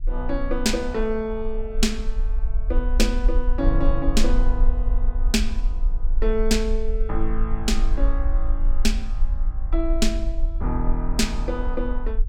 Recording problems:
low-frequency rumble; below 40 Hz, strongest tone 22 Hz, SNR 0 dB

